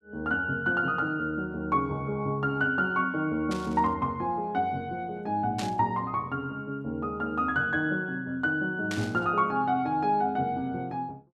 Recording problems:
burst of static; at 3.5 s, at 5.5 s and at 9 s; peak -4 dB vs average level

